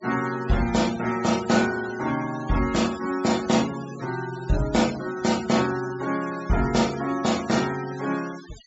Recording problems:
treble cut off; nothing above 8 kHz
denoising artefacts; signal-to-artefact ratio 14 dB

